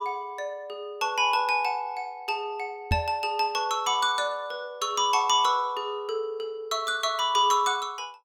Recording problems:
microphone bump; at 3 s; peak +3 dB vs average level

